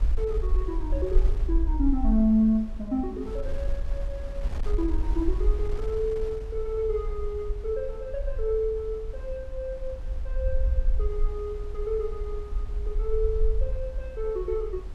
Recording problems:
low-frequency rumble; below 50 Hz, SNR 2 dB
wind noise; below 120 Hz, SNR 14 dB

